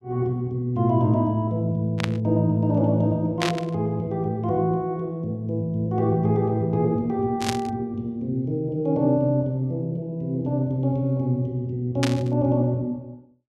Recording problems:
static burst; 4 times, first at 2 s; peak +2 dB vs average level

